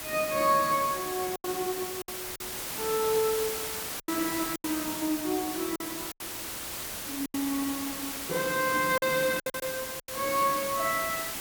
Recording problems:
hiss; slope -1 dB per octave, SNR 4 dB
lost packets; 7% of the sound replaced, filled with silence

